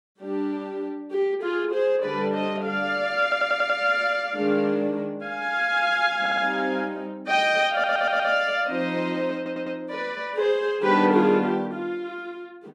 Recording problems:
audio stuttering; 4 times, first at 3 s

